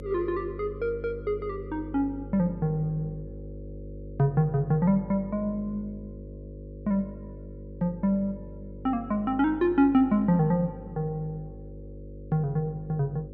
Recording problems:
electrical hum; 50 Hz, harmonics up to 550 Hz, SNR 14 dB

